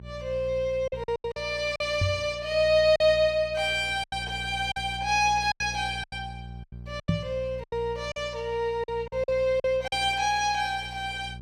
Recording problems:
electrical hum; 60 Hz, harmonics up to 420 Hz, SNR 16 dB
packet loss; 9% of the sound replaced, filled with silence
microphone bump; at 2 s and at 7 s; peak +5 dB vs average level

